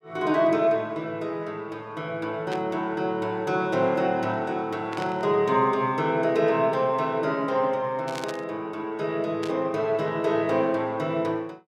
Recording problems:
static burst; 4 times, first at 2.5 s; peak -7 dB vs average level

